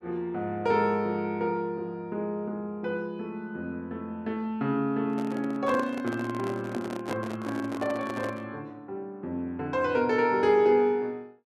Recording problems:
microphone handling noise; from 5 to 8.5 s; peak 0 dB vs average level

